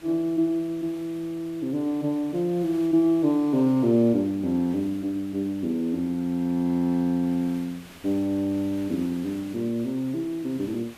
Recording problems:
hiss; SNR 23 dB

